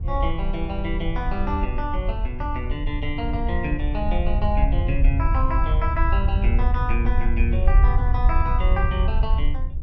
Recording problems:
wind noise; below 66 Hz, SNR -4 dB

